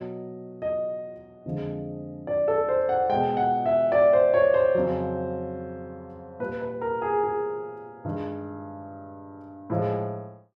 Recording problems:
none

